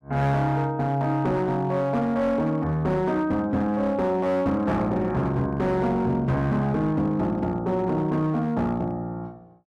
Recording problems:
distortion; hard clipping, signal-to-distortion ratio 12 dB

